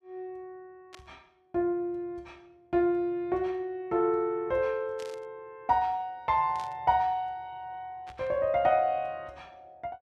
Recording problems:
burst of static; 4 times, first at 1 s; peak -14 dB vs average level

